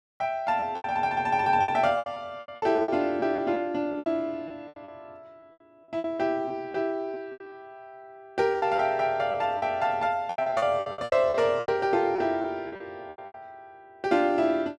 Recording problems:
lost packets; 14% of the sound replaced, filled with repeated pitch periods

